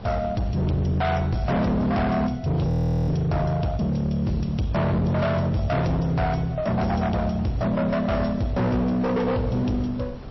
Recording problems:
codec artefacts; MP3, log-spectral distance 3 dB, nothing above 5.7 kHz
distorted audio; hard clipping, uneven, signal-to-distortion ratio 6 dB
wind on the microphone; below 470 Hz, SNR 19 dB
audio freezing; at 2.5 s

